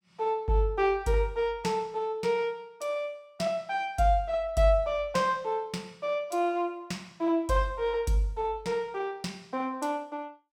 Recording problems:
none

